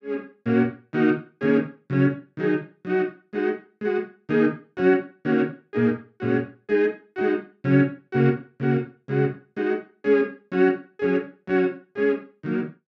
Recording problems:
none

